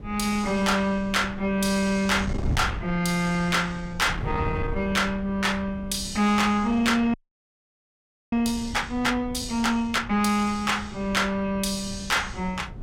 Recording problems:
distortion; soft clipping, signal-to-distortion ratio 11 dB
wind noise; below 170 Hz, SNR 12 dB
audio freezing; at 7 s for 1 s

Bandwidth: 16.5 kHz